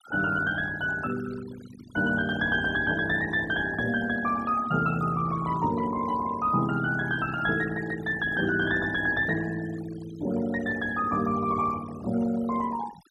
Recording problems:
denoising artefacts; signal-to-artefact ratio 15 dB

